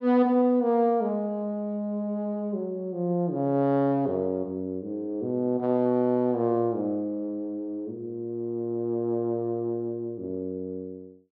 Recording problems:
none

